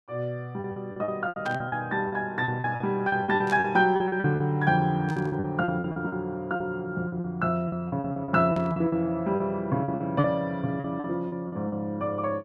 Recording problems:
lost packets; 15% of the sound replaced, filled with repeated pitch periods
burst of static; 4 times, first at 1.5 s; peak -9 dB vs average level

